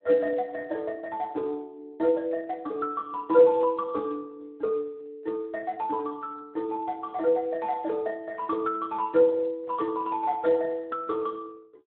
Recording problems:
phone line; 240 Hz to 3.2 kHz, Speex

